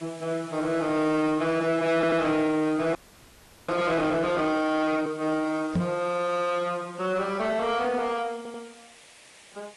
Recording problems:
codec artefacts; AAC, log-spectral distance 6 dB
distortion; soft clipping, signal-to-distortion ratio 12 dB
hiss; SNR 22 dB
stutter; at 2 s and at 8.5 s
audio freezing; at 3 s for 0.5 s
knock on the microphone; at 6 s; peak +4 dB vs average level

